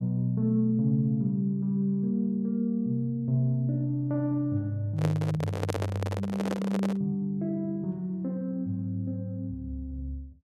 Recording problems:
handling noise; from 5 to 7 s; peak +2 dB vs average level

